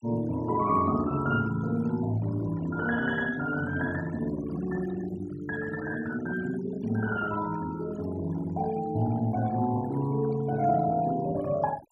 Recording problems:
noise reduction artefacts; signal-to-artefact ratio 18 dB

